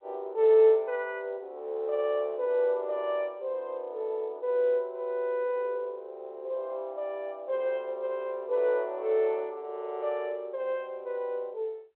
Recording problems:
telephone audio; 320 Hz to 3.5 kHz, G.711

